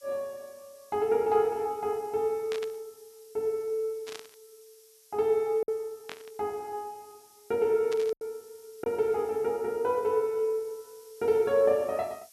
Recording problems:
background hiss; SNR 26 dB
lost packets; 1.4% of the sound replaced, filled with silence
burst of static; 4 times, first at 2.5 s; peak -7 dB vs average level

